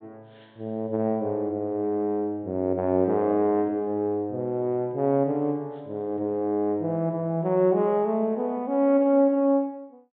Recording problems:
treble cut off; nothing above 4 kHz

